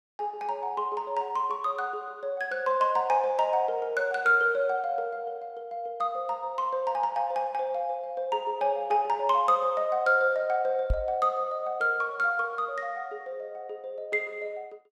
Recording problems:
knock on the microphone; at 11 s; peak +3 dB vs average level

